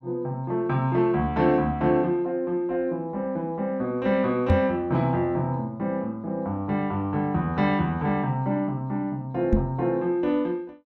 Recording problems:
microphone bump; at 4.5 s and at 9.5 s; peak +7 dB vs average level

